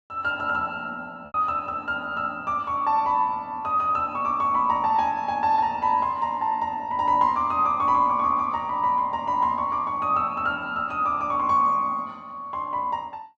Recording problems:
packet loss; 0.6% of the sound replaced, filled with repeated pitch periods

